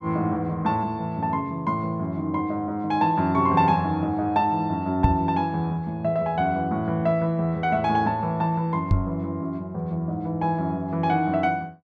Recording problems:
microphone thump; at 5 s and at 9 s; peak +7 dB vs average level

